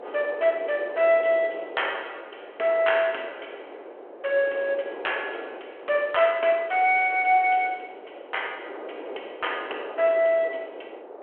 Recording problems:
phone line; 300 Hz to 3.3 kHz, G.726
wind noise; below 720 Hz, SNR 15 dB

